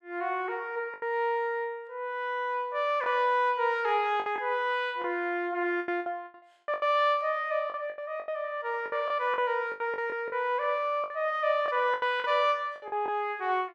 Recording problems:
lost packets; 10% of the sound replaced, filled with the last packet

